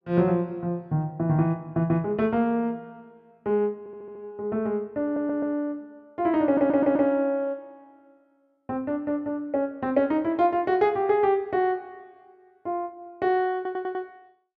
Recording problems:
audio stuttering; 4 times, first at 4 s

